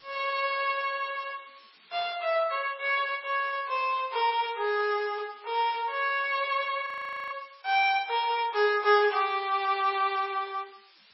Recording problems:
codec artefacts; MP3, log-spectral distance 11 dB, nothing above 5.5 kHz
background hiss; SNR 28 dB
audio freezing; at 7 s

